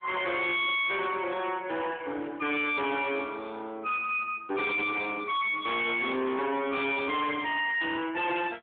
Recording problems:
phone line; 240 Hz to 3.5 kHz, AMR-NB
distortion; hard clipping, uneven, signal-to-distortion ratio 6 dB

